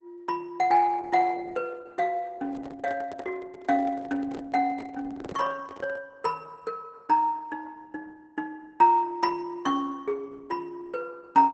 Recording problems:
lossy codec; Opus, log-spectral distance 3 dB, nothing above 7.8 kHz
handling noise; from 2.5 to 6 s; peak -7 dB vs average level

